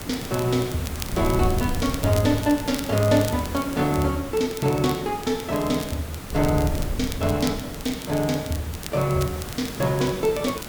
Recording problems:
hiss; slope -4 dB per octave, SNR 11 dB
wind noise; below 140 Hz, SNR 11 dB
crackle; vinyl, SNR 15 dB

